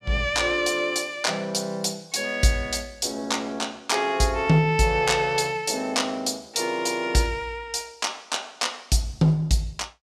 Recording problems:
none

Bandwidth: 14.5 kHz